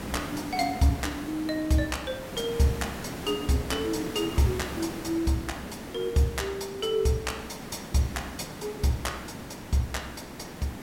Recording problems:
background hiss; slope -5 dB per octave, SNR 9 dB

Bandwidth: 16.5 kHz